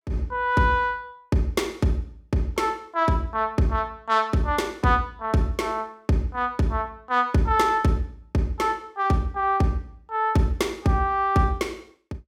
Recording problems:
none

